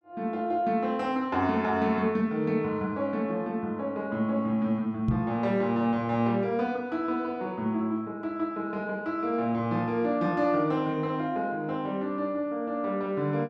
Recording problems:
microphone bump; at 5 s; peak +5 dB vs average level

